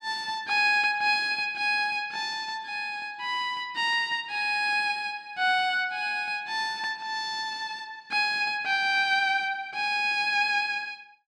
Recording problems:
none

